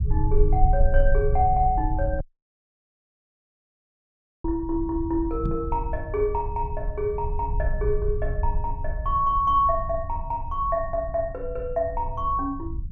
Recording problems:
low-frequency rumble; below 66 Hz, strongest tone 24 Hz, SNR 4 dB
audio cutting out; at 2 s for 2 s
knock on the microphone; at 5.5 s; peak -1 dB vs average level

